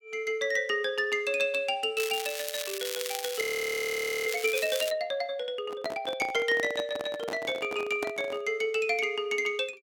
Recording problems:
crackle; from 2 to 5 s; loose cable, SNR 7 dB
frozen audio; at 3.5 s for 1 s
microphone handling noise; from 5.5 to 8.5 s; peak -2 dB vs average level

